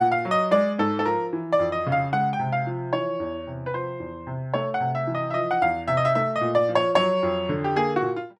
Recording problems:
none

